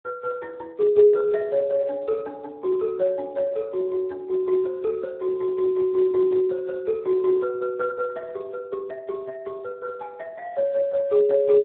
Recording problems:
phone line; 300 Hz to 2 kHz, Speex

